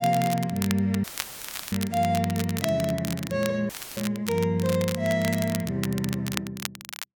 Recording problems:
crackling; vinyl, SNR 9 dB
audio cutting out; at 1 s for 0.5 s and at 3.5 s; filled with static

